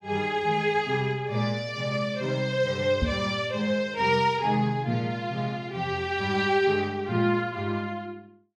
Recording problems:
knock on the microphone; at 3 s; peak +3 dB vs average level

